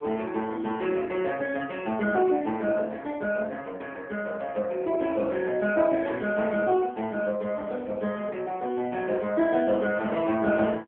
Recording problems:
phone line; 260 Hz to 4 kHz, AMR-NB

